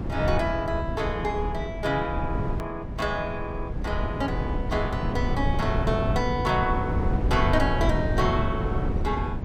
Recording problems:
mains hum; 60 Hz, harmonics up to 300 Hz, SNR 17 dB
rumble; below 190 Hz, SNR 1 dB
edit click; at 2.5 s

